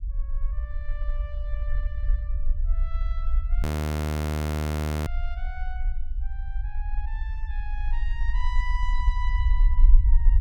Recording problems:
low-frequency rumble; below 54 Hz, SNR -14 dB
audio freezing; at 3.5 s for 1.5 s

